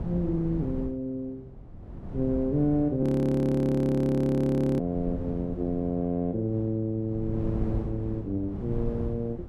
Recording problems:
wind on the microphone; below 200 Hz, SNR 10 dB
audio freezing; at 3 s for 2 s

